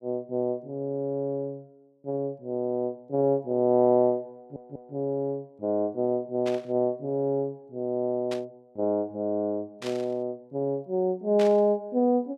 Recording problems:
audio stuttering; at 4.5 s
static burst; 4 times, first at 6.5 s; peak -6 dB vs average level

